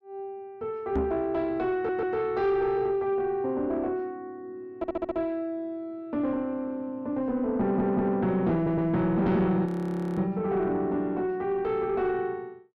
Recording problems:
distorted audio; soft clipping, signal-to-distortion ratio 11 dB
microphone bump; at 1 s; peak +3 dB vs average level
stutter; 4 times, first at 2 s
audio freezing; at 9.5 s for 0.5 s

